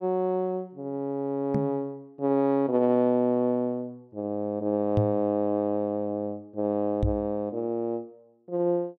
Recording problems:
microphone bump; at 1.5 s, at 5 s and at 7 s; peak +5 dB vs average level

